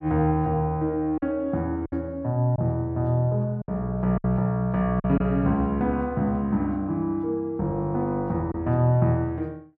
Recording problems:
packet loss; 3% of the sound replaced, filled with silence

